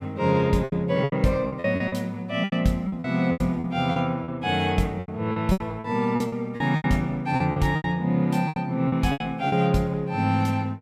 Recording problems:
packet loss; 14% of the sound replaced, filled with repeated pitch periods

